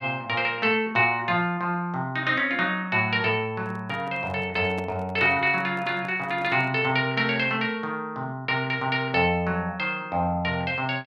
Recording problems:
handling noise; from 3.5 to 7 s; peak -9 dB vs average level

